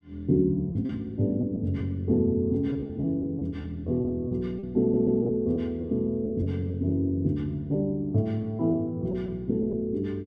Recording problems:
packet loss; 7% of the sound replaced, filled with repeated pitch periods
audio stuttering; at 5 s

